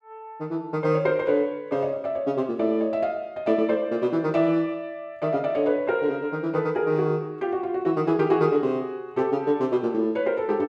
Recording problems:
none

